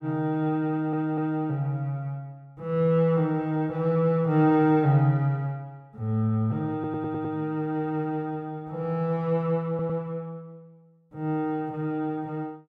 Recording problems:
audio stuttering; at 0.5 s, at 6.5 s and at 9.5 s

